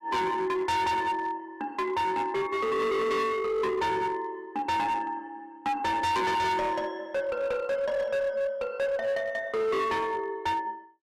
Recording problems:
distortion; hard clipping, uneven, signal-to-distortion ratio 7 dB

